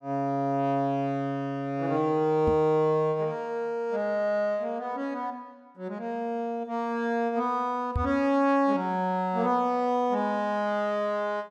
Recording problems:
microphone thump; at 2.5 s and at 8 s; peak +2 dB vs average level

